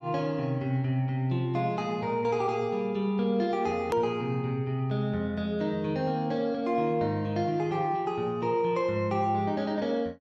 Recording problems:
edit click; at 4 s

